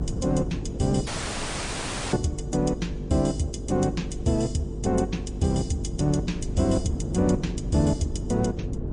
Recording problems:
lossy compression; MP3, log-spectral distance 3 dB, nothing above 9 kHz
hum; 50 Hz, harmonics up to 450 Hz, SNR 9 dB
wind on the microphone; below 230 Hz, SNR 9 dB
audio cutting out; at 1 s for 1 s

